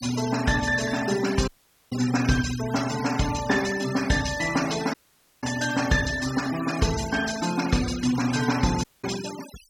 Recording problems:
denoising artefacts; signal-to-artefact ratio 11 dB
audio cutting out; at 1.5 s, at 5 s and at 9 s

